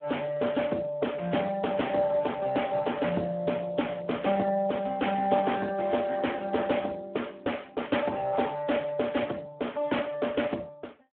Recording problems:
telephone audio; 220 Hz to 3.4 kHz, Speex

